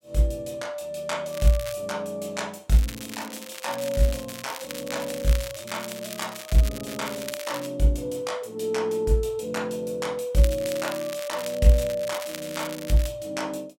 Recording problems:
crackle; at 1.5 s, from 2.5 to 7.5 s and from 10 to 13 s; loose cable, SNR 11 dB

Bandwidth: 16 kHz